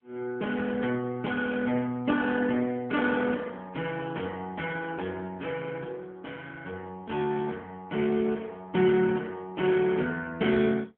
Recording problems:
phone line; 170 Hz to 3.3 kHz, AMR-NB

